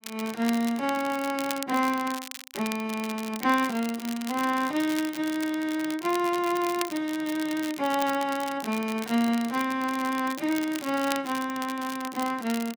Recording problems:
crackle; vinyl, SNR 12 dB

